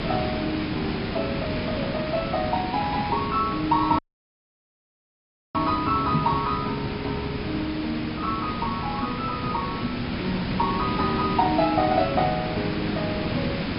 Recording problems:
low-pass filter; nothing above 5.5 kHz
hiss; SNR 3 dB
dropout; at 4 s for 1.5 s
knock on the microphone; at 6 s; peak +6 dB vs average level

